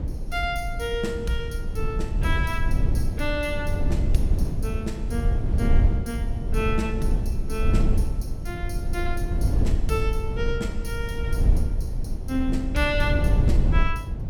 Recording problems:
rumble; below 88 Hz, SNR -4 dB

